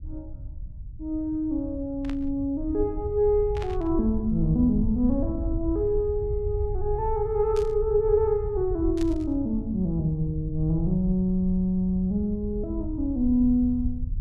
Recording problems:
low-frequency rumble; below 82 Hz, SNR 9 dB
static burst; 4 times, first at 2 s; peak -11 dB vs average level

